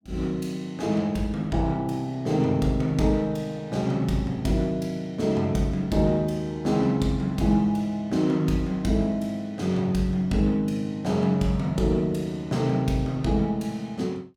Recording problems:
none

